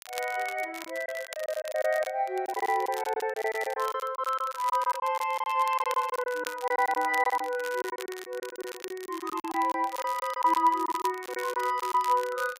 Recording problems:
crackle; vinyl, SNR 15 dB
packet loss; 13% of the sound replaced, filled with silence

